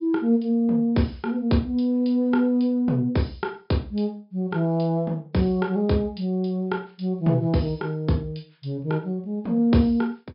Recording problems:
treble missing; nothing above 5.5 kHz

